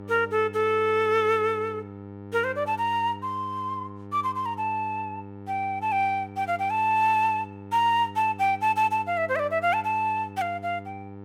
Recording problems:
hum; 50 Hz, harmonics up to 1.4 kHz, SNR 16 dB

